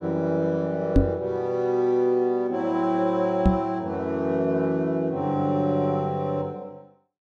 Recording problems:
knock on the microphone; at 1 s and at 3.5 s; peak +9 dB vs average level

